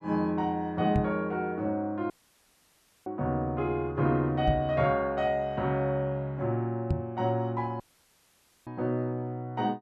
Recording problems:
microphone thump; at 1 s, at 4.5 s and at 7 s; peak +5 dB vs average level
dropout; at 2 s for 1 s and at 8 s for 1 s

